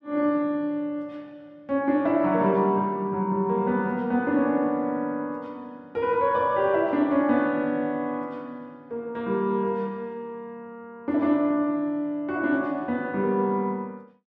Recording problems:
none

